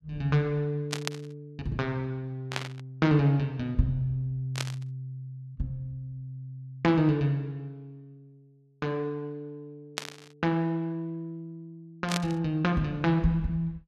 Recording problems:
static burst; 5 times, first at 1 s; peak +3 dB vs average level

